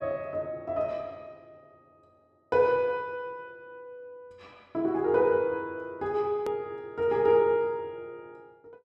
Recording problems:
hard cut with a click; at 6.5 s

